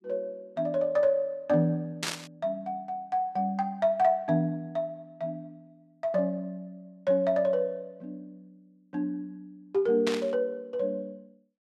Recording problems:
burst of static; at 2 s and at 10 s; peak +2 dB vs average level

